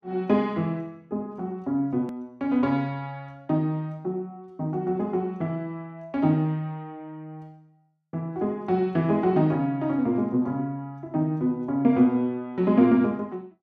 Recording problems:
click at an edit; at 2 s

